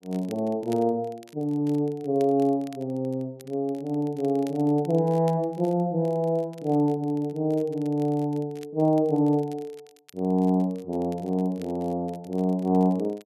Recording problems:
crackle; vinyl, SNR 28 dB

